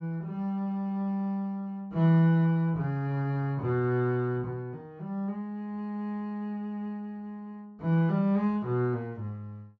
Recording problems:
low-pass filter; nothing above 7.5 kHz

